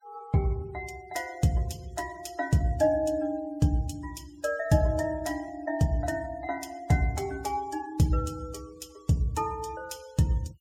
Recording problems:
noise reduction artefacts; signal-to-artefact ratio 23 dB

